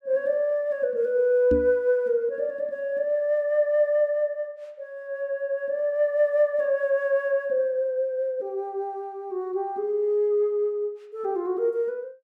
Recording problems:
microphone thump; at 1.5 s; peak +2 dB vs average level

